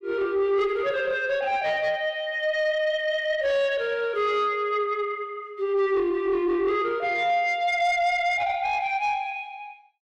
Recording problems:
distortion; soft clipping, signal-to-distortion ratio 11 dB

